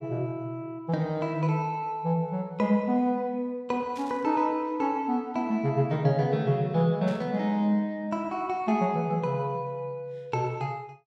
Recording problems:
static burst; at 4 s and at 7 s; peak -14 dB vs average level

